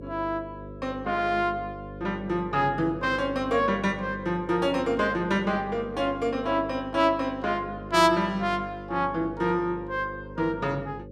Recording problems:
electrical hum; 50 Hz, harmonics up to 550 Hz, SNR 14 dB

